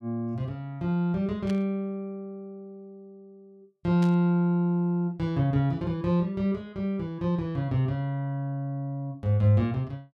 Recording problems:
burst of static; at 1.5 s and at 4 s; peak -11 dB vs average level

